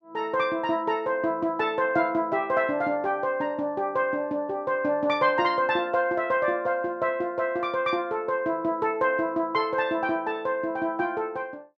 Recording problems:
none

